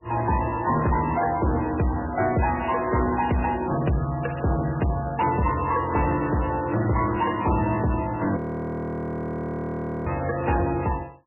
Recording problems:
lossy codec; MP3, log-spectral distance 6 dB, nothing above 2.8 kHz
distortion; soft clipping, signal-to-distortion ratio 11 dB
crackling; at 1 s, from 2 to 5 s and at 7.5 s; loose cable, SNR 27 dB
frozen audio; at 8.5 s for 1.5 s

